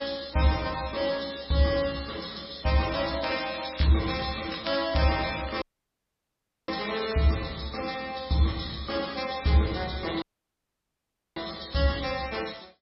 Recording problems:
codec artefacts; MP3, log-spectral distance 10 dB, nothing above 5.5 kHz
crackle; from 3 to 7 s; loose cable, SNR 12 dB
audio cutting out; at 5.5 s for 1 s and at 10 s for 1 s

